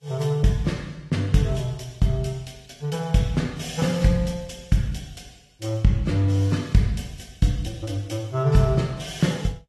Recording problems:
lossy codec; AAC, then Vorbis, log-spectral distance 3 dB, nothing above 12.7 kHz

